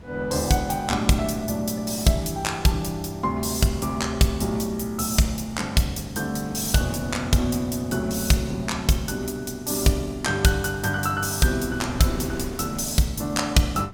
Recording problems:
wind on the microphone; below 350 Hz, SNR 18 dB

